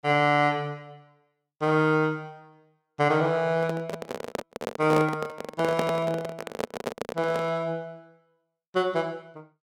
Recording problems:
handling noise; from 3.5 to 7.5 s; peak +2 dB vs average level

